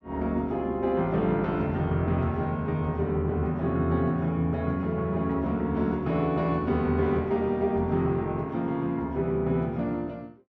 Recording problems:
none

